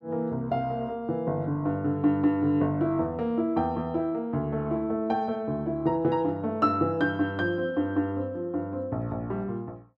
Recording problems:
none

